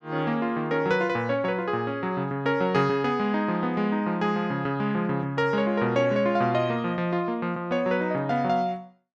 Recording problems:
none

